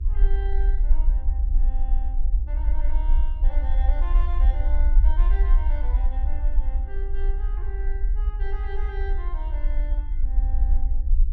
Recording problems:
hum; 50 Hz, harmonics up to 350 Hz, SNR 14 dB
rumble; below 46 Hz, SNR -16 dB

